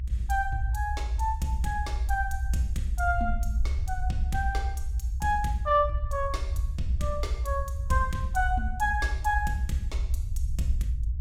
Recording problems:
low-frequency rumble; below 66 Hz, SNR 1 dB

